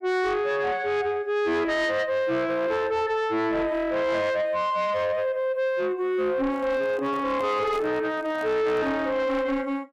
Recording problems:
distorted audio; soft clipping, signal-to-distortion ratio 11 dB
handling noise; from 6.5 to 9 s; peak -9 dB vs average level

